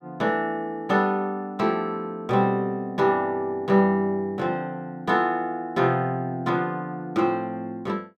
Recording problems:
none

